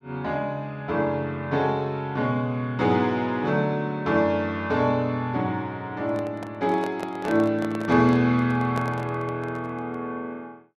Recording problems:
microphone handling noise; from 6 to 10 s; peak -4 dB vs average level

